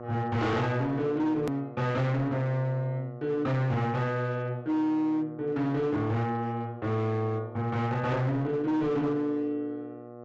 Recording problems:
low-pass filter; nothing above 8 kHz
distorted audio; hard clipping, signal-to-distortion ratio 10 dB
hum; 60 Hz, harmonics up to 1.4 kHz, SNR 15 dB
hard cut with a click; at 1.5 s

